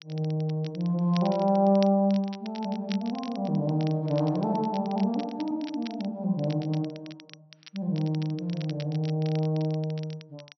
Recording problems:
treble missing; nothing above 5.8 kHz
crackle; vinyl, SNR 20 dB

